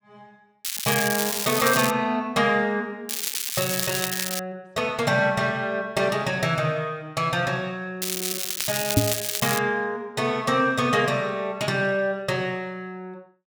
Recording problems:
crackle; from 0.5 to 2 s, from 3 to 4.5 s and from 8 to 9.5 s; loose cable, SNR 2 dB
microphone bump; at 9 s; peak +8 dB vs average level

